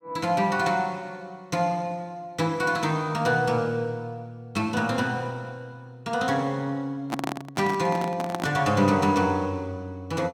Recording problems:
handling noise; from 7 to 8.5 s; peak +1 dB vs average level

